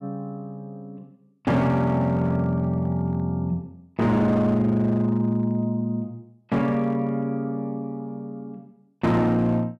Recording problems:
distorted audio; hard clipping, signal-to-distortion ratio 12 dB

